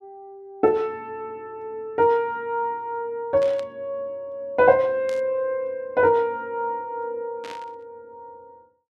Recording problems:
burst of static; at 3.5 s, at 5 s and at 7.5 s; peak -11 dB vs average level

